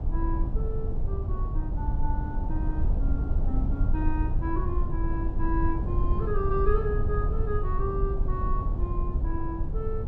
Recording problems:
rumble; below 74 Hz, SNR -5 dB

